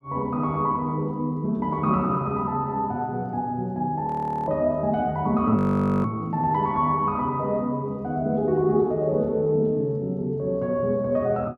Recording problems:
audio freezing; at 4 s and at 5.5 s

